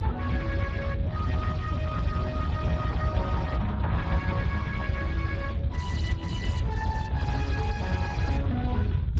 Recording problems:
codec artefacts; Vorbis, then Speex, log-spectral distance 2 dB, nothing above 7.3 kHz
low-frequency rumble; below 120 Hz, SNR -2 dB

